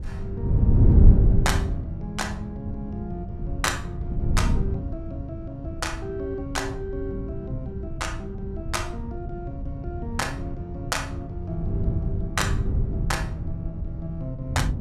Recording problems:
wind on the microphone; below 120 Hz, SNR -4 dB

